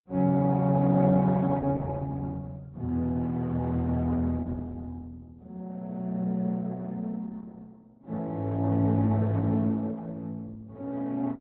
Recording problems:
lossy compression; Opus, log-spectral distance 2 dB, nothing above 4 kHz

